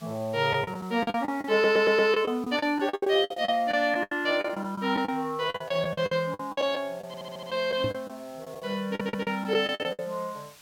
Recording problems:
hiss; slope +1 dB per octave, SNR 26 dB
lost packets; 15% of the sound replaced, filled with the last packet
stutter; at 1.5 s, at 7 s and at 9 s
microphone thump; at 8 s; peak -2 dB vs average level

